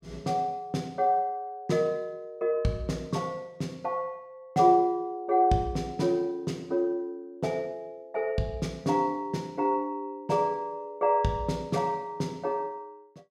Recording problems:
none

